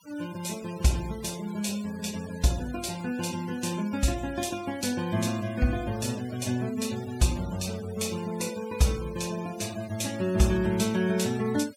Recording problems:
noise reduction artefacts; signal-to-artefact ratio 16 dB

